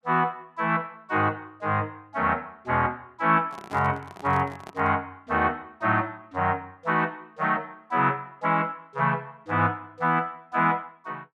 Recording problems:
handling noise; from 3.5 to 5 s; peak -9 dB vs average level

